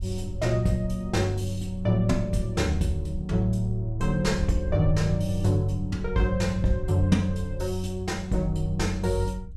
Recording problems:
rumble; below 66 Hz, SNR 11 dB

